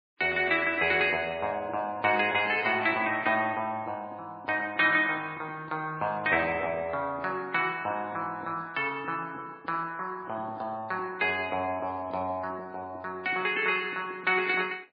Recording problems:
lossy codec; MP3, log-spectral distance 2 dB, nothing above 4.1 kHz

